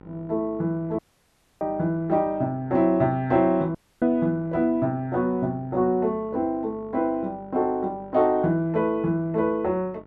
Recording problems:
hum; 50 Hz, harmonics up to 1.5 kHz, SNR 24 dB
dropout; at 1 s for 0.5 s and at 4 s

